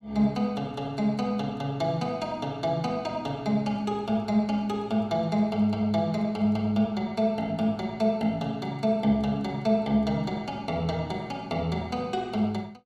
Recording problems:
none

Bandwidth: 14.5 kHz